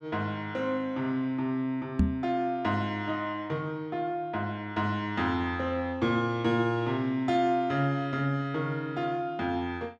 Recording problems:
knock on the microphone; at 2 s; peak +8 dB vs average level

